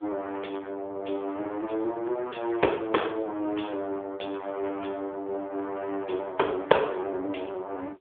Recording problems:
telephone audio; 260 Hz to 3.8 kHz, AMR-NB

